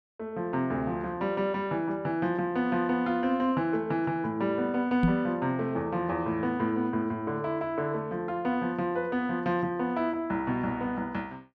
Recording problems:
microphone bump; at 5 s; peak +7 dB vs average level

